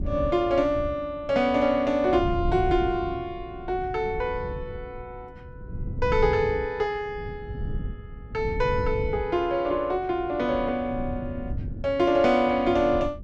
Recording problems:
wind noise; below 130 Hz, SNR 11 dB

